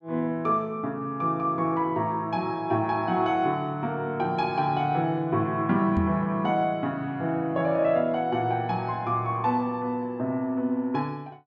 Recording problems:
microphone bump; at 6 s; peak +1 dB vs average level

